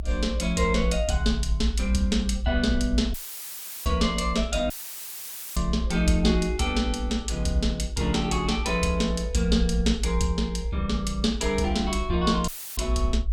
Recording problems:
rumble; below 60 Hz, strongest tone 58 Hz, SNR 4 dB
dropout; at 3 s for 0.5 s, at 4.5 s for 1 s and at 12 s; filled with static

